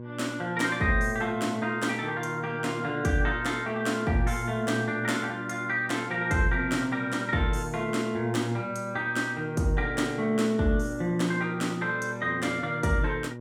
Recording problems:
electrical hum; 60 Hz, harmonics up to 1.1 kHz, SNR 12 dB

